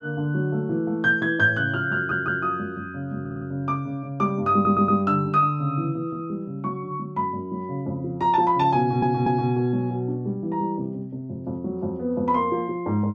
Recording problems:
audio stuttering; 4 times, first at 2 s

